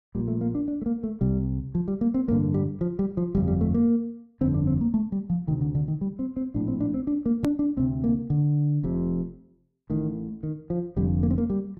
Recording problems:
edit click; at 7.5 s

